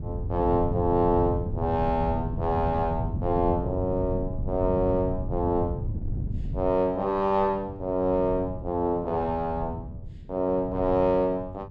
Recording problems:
wind noise; below 140 Hz, SNR 7 dB

